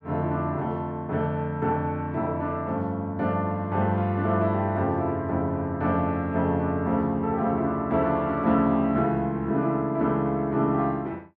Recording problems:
none

